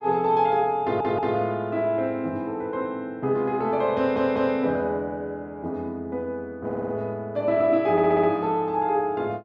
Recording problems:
audio stuttering; 4 times, first at 1 s

